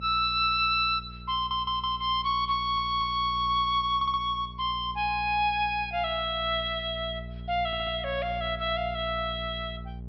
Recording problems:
treble cut off; nothing above 5.5 kHz
electrical hum; 60 Hz, harmonics up to 420 Hz, SNR 15 dB
audio stuttering; 4 times, first at 1.5 s

